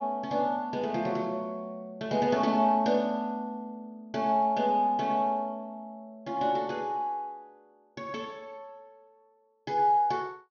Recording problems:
treble cut off; nothing above 6.5 kHz

